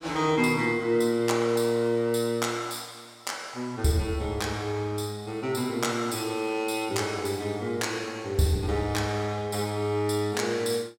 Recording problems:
none

